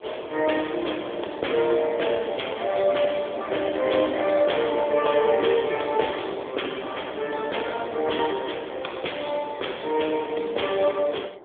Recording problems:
telephone audio; 320 Hz to 3.4 kHz, AMR-NB
wind on the microphone; below 680 Hz, SNR 19 dB

